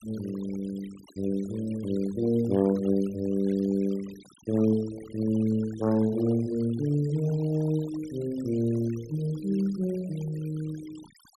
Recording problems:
noise reduction artefacts; signal-to-artefact ratio 21 dB
static burst; at 3.5 s; peak -25 dB vs average level

